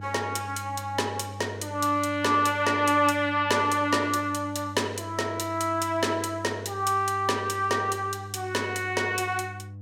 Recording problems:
hum; 50 Hz, harmonics up to 500 Hz, SNR 14 dB

